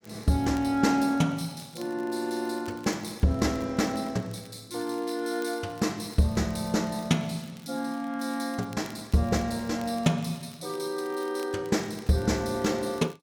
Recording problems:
crackling; vinyl, SNR 25 dB

